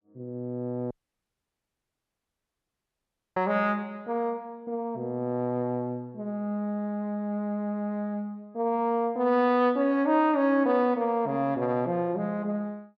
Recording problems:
audio cutting out; at 1 s for 2.5 s

